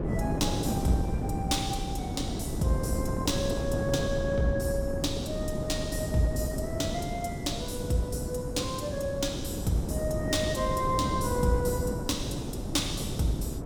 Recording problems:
wind on the microphone; below 330 Hz, SNR 2 dB

